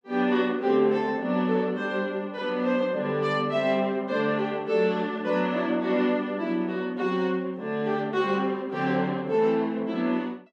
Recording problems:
none

